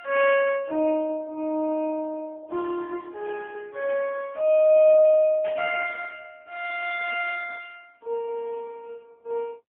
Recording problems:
phone line; 500 Hz to 3.3 kHz, AMR-NB, then MP3
burst of static; at 4 s and at 5.5 s; peak -13 dB vs average level

